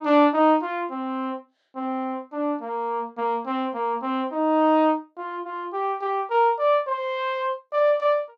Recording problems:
none

